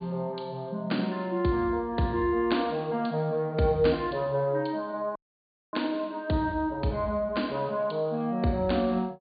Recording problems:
treble cut off; nothing above 4.7 kHz
dropout; at 5 s for 0.5 s

